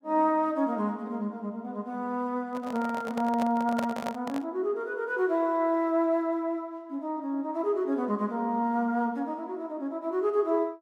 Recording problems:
handling noise; from 2.5 to 4.5 s; peak +1 dB vs average level

